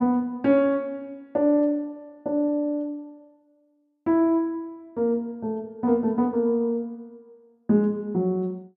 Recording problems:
none

